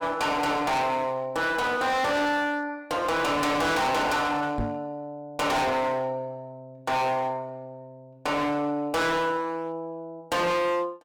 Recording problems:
distortion; hard clipping, uneven, signal-to-distortion ratio 6 dB
knock on the microphone; at 4.5 s; peak 0 dB vs average level

